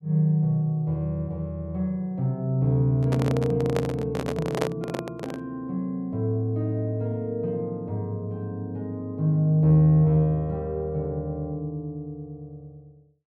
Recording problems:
microphone handling noise; from 3 to 5.5 s; peak +3 dB vs average level

